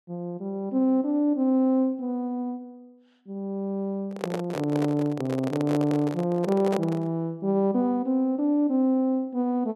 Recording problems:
microphone handling noise; from 4 to 7 s; peak 0 dB vs average level

